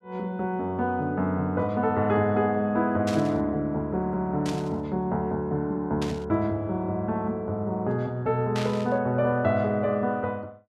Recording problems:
static burst; 4 times, first at 3 s; peak -5 dB vs average level

